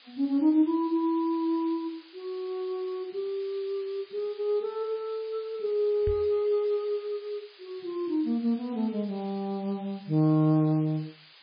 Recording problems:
lossy codec; MP3, log-spectral distance 8 dB, nothing above 10.7 kHz
hiss; SNR 24 dB
microphone bump; at 6 s; peak -2 dB vs average level

